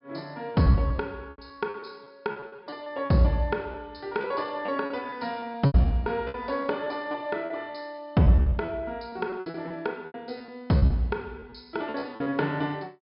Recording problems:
treble missing; nothing above 5.5 kHz
packet loss; 14% of the sound replaced, filled with repeated pitch periods

